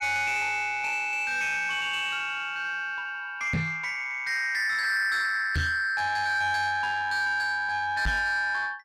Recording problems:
distortion; soft clipping, signal-to-distortion ratio 11 dB
knock on the microphone; at 3.5 s, at 5.5 s and at 8 s; peak +3 dB vs average level

